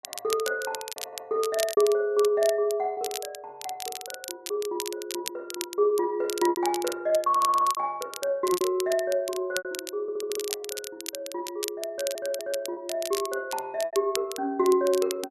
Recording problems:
crackling; vinyl, SNR 10 dB
packet loss; 5% of the sound replaced, filled with repeated pitch periods
audio stuttering; 4 times, first at 1 s

